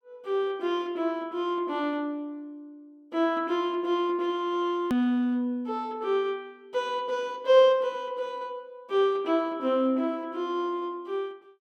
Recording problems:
hard cut with a click; at 5 s

